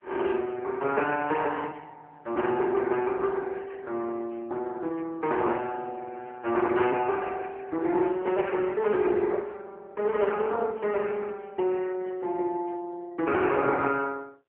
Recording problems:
telephone audio; 280 Hz to 2.7 kHz, AMR-NB

